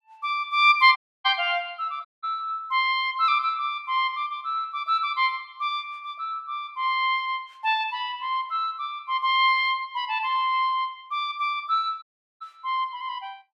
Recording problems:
dropout; at 1 s, at 2 s and at 12 s

